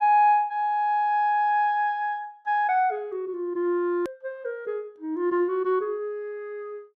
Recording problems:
click at an edit; at 4 s

